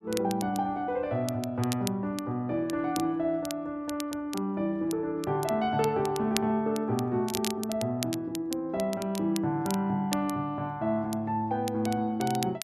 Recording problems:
crackle; vinyl, SNR 12 dB

